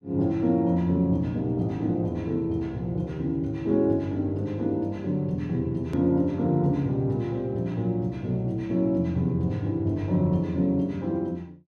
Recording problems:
hard cut with a click; at 6 s

